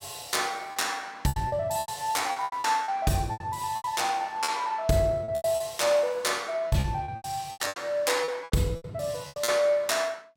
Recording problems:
lost packets; 15% of the sound replaced, filled with repeated pitch periods

